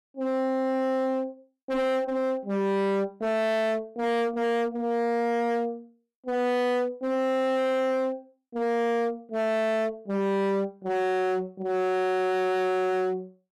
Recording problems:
distorted audio; hard clipping, uneven, signal-to-distortion ratio 7 dB

